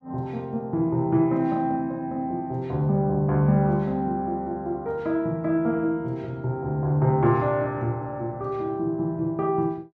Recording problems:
none

